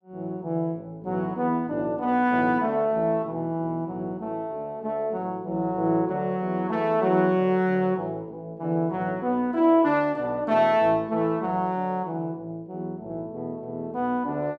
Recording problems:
none

